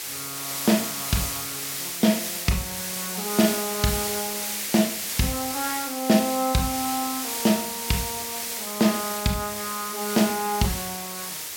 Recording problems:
hiss; slope +1 dB per octave, SNR 3 dB

